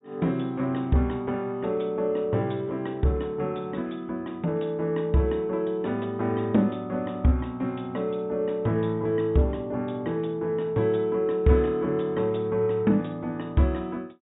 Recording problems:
treble missing; nothing above 4 kHz

